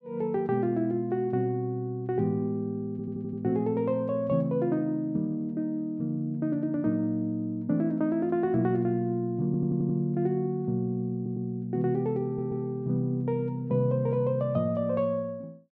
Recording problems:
stutter; 4 times, first at 3 s

